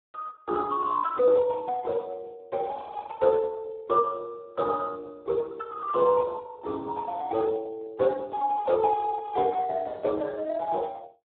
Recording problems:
telephone audio; 300 Hz to 2.1 kHz, Speex

